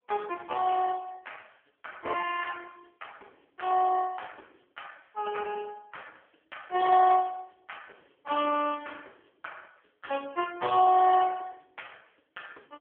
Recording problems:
telephone audio; 240 Hz to 3.3 kHz, AMR-NB

